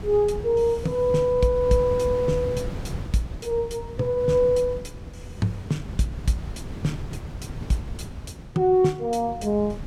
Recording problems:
wind noise; below 210 Hz, SNR 12 dB

